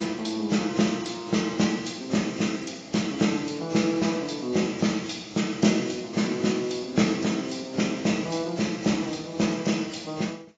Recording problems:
lossy compression; AAC, log-spectral distance 6 dB, nothing above 7.3 kHz

